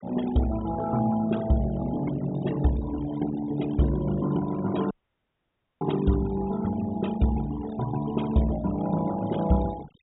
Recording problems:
treble cut off; nothing above 4 kHz
noise reduction artefacts; signal-to-artefact ratio 15 dB
audio cutting out; at 5 s for 1 s

